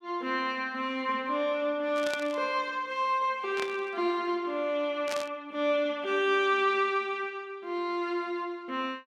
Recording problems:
static burst; at 2 s, at 3.5 s and at 5 s; peak -2 dB vs average level

